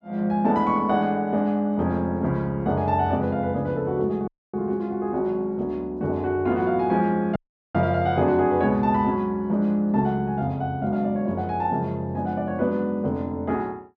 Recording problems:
audio cutting out; at 4.5 s and at 7.5 s

